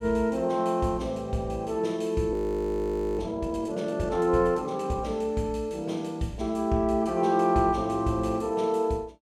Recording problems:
frozen audio; at 2.5 s for 1 s

